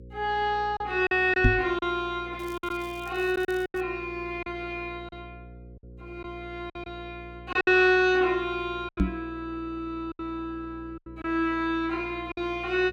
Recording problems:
hum; 60 Hz, harmonics up to 540 Hz, SNR 19 dB
lost packets; 7% of the sound replaced, filled with silence
microphone thump; at 1.5 s and at 9 s; peak +8 dB vs average level
crackling; from 2.5 to 4 s; loose cable, SNR 24 dB

